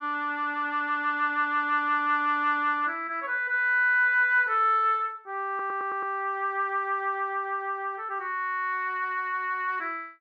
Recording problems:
stutter; at 5.5 s

